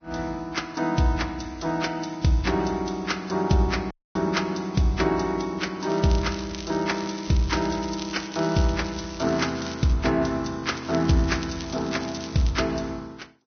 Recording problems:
treble cut off; nothing above 6.2 kHz
codec artefacts; Vorbis, log-spectral distance 8 dB
audio cutting out; at 4 s
crackling; from 6 to 10 s and from 11 to 13 s; loose cable, SNR 14 dB

